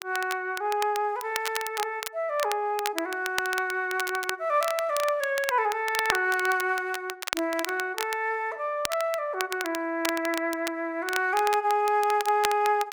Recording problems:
crackling; vinyl, SNR 9 dB

